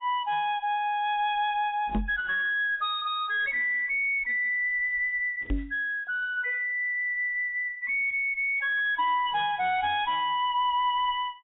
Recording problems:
lossy compression; AAC, log-spectral distance 2 dB, nothing above 3.4 kHz
distortion; soft clipping, signal-to-distortion ratio 9 dB
knock on the microphone; at 2 s and at 5.5 s; peak +2 dB vs average level

